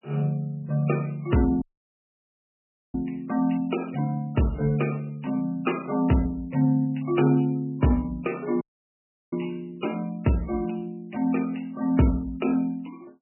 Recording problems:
codec artefacts; MP3, log-spectral distance 4 dB, nothing above 2.9 kHz
audio cutting out; at 1.5 s for 1.5 s and at 8.5 s for 0.5 s

